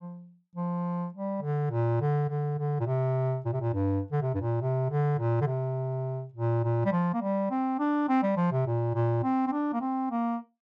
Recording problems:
none

